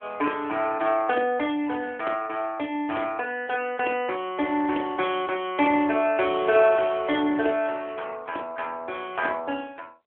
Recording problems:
phone line; 260 Hz to 3.3 kHz, AMR-NB

